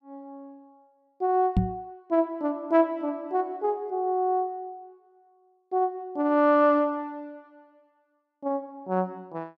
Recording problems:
microphone bump; at 1.5 s; peak +6 dB vs average level

